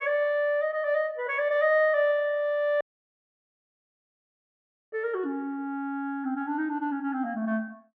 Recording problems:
dropout; at 3 s for 2 s

